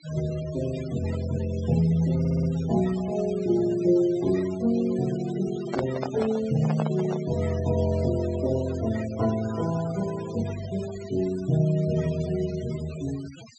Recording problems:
treble missing; nothing above 7.9 kHz
noise reduction artefacts; signal-to-artefact ratio 17 dB
audio stuttering; at 2 s
handling noise; from 5.5 to 7.5 s; peak +1 dB vs average level

